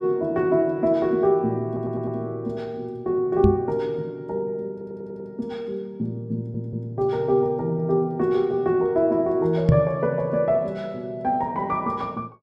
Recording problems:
audio stuttering; at 1.5 s, at 4.5 s and at 6.5 s
microphone bump; at 3.5 s and at 9.5 s; peak +9 dB vs average level

